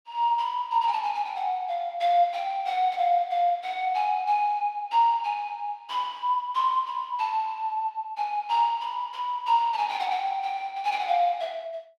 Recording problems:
none

